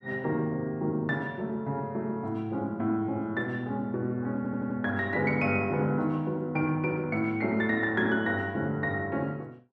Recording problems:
audio stuttering; at 4.5 s

